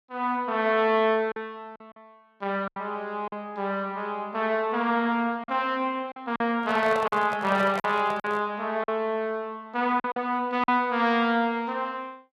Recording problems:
packet loss; 5% of the sound replaced, filled with silence
handling noise; from 6.5 to 8.5 s; peak -3 dB vs average level

